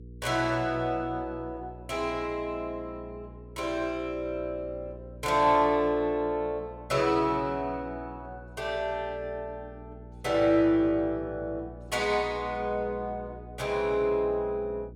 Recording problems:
hum; 60 Hz, harmonics up to 480 Hz, SNR 18 dB

